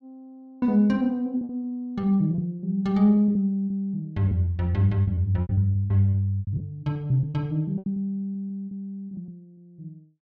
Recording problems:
packet loss; 12% of the sound replaced, filled with repeated pitch periods

